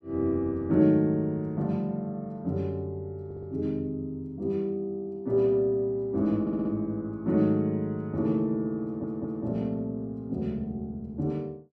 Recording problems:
stutter; at 3.5 s, at 6.5 s and at 9 s

